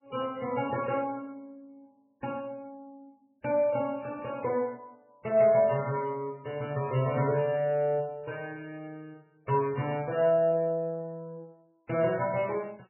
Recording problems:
lossy compression; MP3, log-spectral distance 3 dB, nothing above 2.9 kHz

